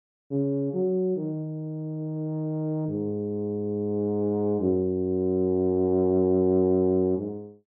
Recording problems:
low-pass filter; nothing above 6.3 kHz

